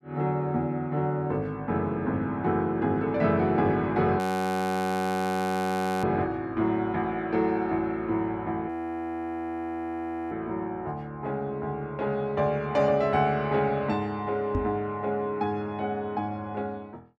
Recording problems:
frozen audio; at 4 s for 2 s and at 8.5 s for 1.5 s
microphone thump; at 15 s; peak +2 dB vs average level

